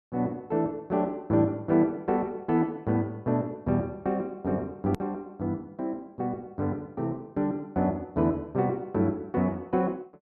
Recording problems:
hard cut with a click; at 5 s

